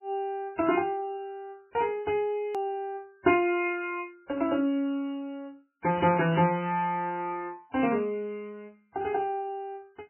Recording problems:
lossy codec; MP3, log-spectral distance 2 dB, nothing above 2.5 kHz
click at an edit; at 2.5 s

